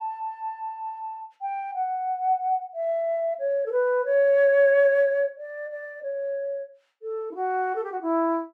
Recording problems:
none

